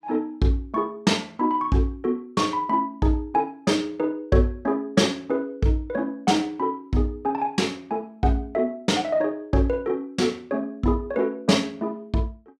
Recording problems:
none

